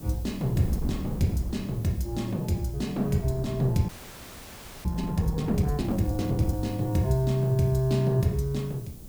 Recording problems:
hiss; slope +6 dB per octave, SNR 23 dB
wind on the microphone; below 210 Hz, SNR 11 dB
frozen audio; at 4 s for 1 s

